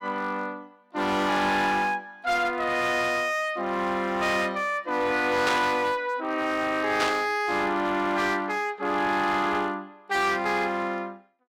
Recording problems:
distortion; hard clipping, signal-to-distortion ratio 11 dB
static burst; at 5.5 s and at 7 s; peak +1 dB vs average level

